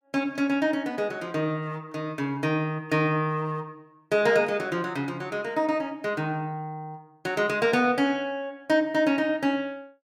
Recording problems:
none

